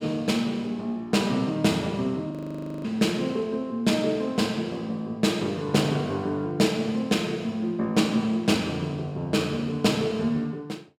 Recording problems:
audio freezing; at 2.5 s for 0.5 s

